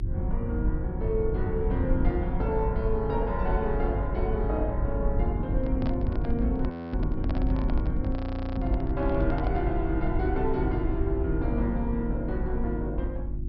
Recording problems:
treble missing; nothing above 5.5 kHz
electrical hum; 50 Hz, harmonics up to 350 Hz, SNR 4 dB
rumble; below 84 Hz, SNR 2 dB
microphone handling noise; from 5.5 to 9.5 s; peak -3 dB vs average level
audio freezing; at 6.5 s and at 8 s

